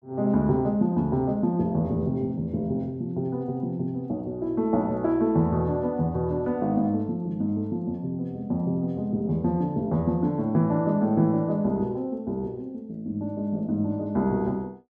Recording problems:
none

